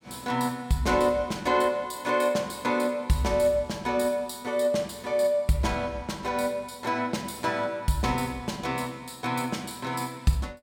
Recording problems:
none

